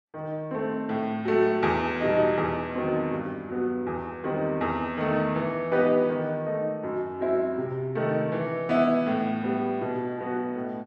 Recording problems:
none

